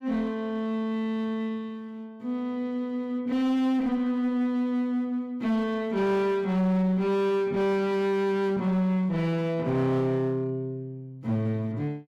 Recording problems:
distortion; hard clipping, uneven, signal-to-distortion ratio 11 dB

